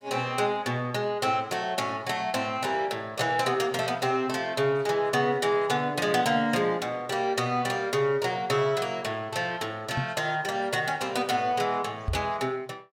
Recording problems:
microphone bump; at 10 s and at 12 s; peak +1 dB vs average level

